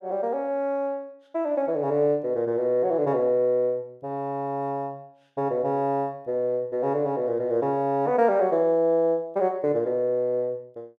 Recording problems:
none

